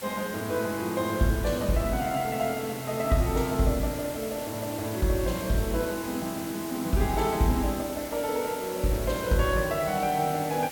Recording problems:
hiss; slope -1 dB per octave, SNR 11 dB

